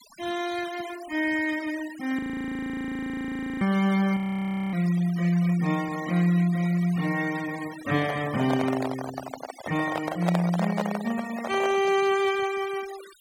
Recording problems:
noise reduction artefacts; signal-to-artefact ratio 16 dB
audio freezing; at 2 s for 1.5 s and at 4 s for 0.5 s
microphone handling noise; from 8 to 12 s; peak +3 dB vs average level

